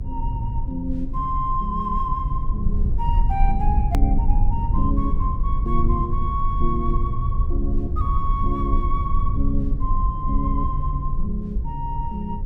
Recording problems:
hum; 60 Hz, harmonics up to 540 Hz, SNR 18 dB
low-frequency rumble; below 62 Hz, SNR -2 dB
click at an edit; at 4 s

